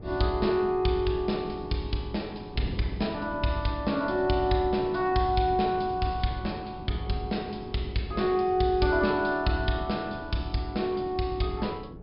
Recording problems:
low-pass filter; nothing above 5.5 kHz
wind on the microphone; below 300 Hz, SNR 14 dB

